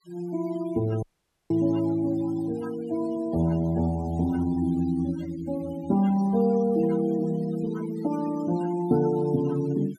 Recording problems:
denoising artefacts; signal-to-artefact ratio 19 dB
audio cutting out; at 1 s

